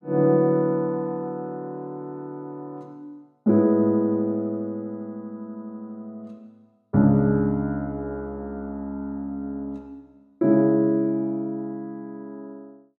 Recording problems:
none

